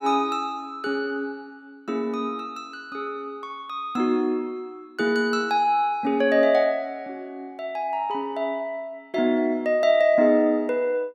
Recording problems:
none

